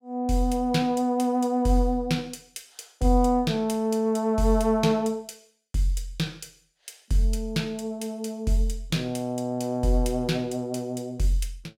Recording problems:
none

